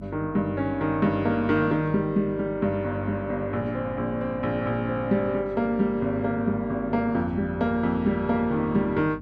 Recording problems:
hum; 50 Hz, harmonics up to 300 Hz, SNR 16 dB

